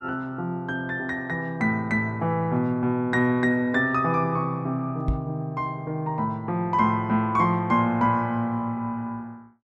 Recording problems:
microphone bump; at 5 s; peak +2 dB vs average level

